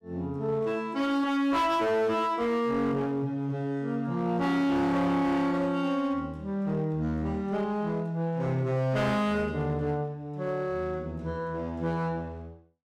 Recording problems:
distorted audio; hard clipping, uneven, signal-to-distortion ratio 11 dB

